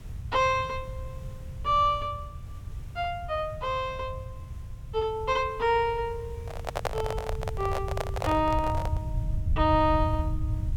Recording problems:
hiss; slope -4 dB per octave, SNR 27 dB
rumble; below 110 Hz, SNR 7 dB
handling noise; from 6.5 to 9 s; peak +3 dB vs average level

